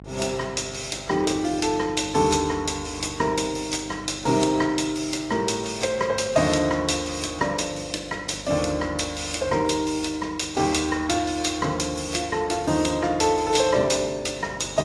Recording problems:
lossy codec; AAC, log-spectral distance 4 dB, nothing above 11 kHz
electrical hum; 50 Hz, harmonics up to 1.1 kHz, SNR 21 dB

